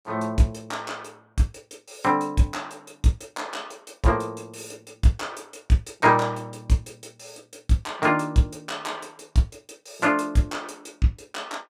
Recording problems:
none

